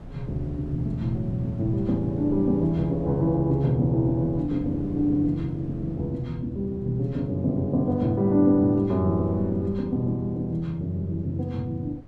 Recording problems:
wind noise; below 160 Hz, SNR 19 dB

